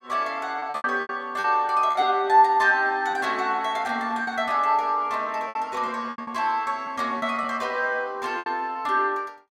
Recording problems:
packet loss; 8% of the sound replaced, filled with repeated pitch periods

